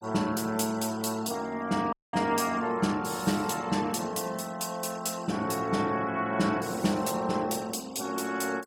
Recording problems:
denoising artefacts; signal-to-artefact ratio 20 dB
dropout; at 2 s

